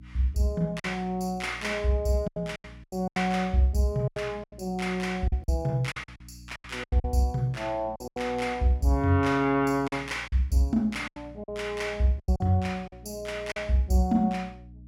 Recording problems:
electrical hum; 60 Hz, harmonics up to 300 Hz, SNR 20 dB
lost packets; 10% of the sound replaced, filled with silence

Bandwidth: 16.5 kHz